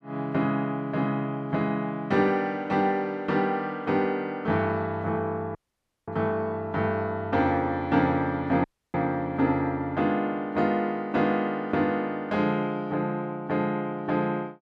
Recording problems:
dropout; at 5.5 s for 0.5 s and at 8.5 s

